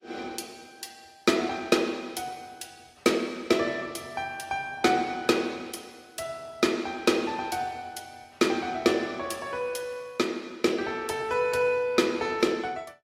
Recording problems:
lossy compression; AAC, log-spectral distance 3 dB, nothing above 15.5 kHz

